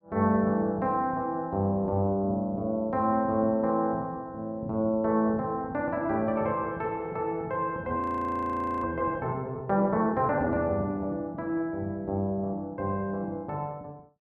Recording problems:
audio freezing; at 8 s for 1 s

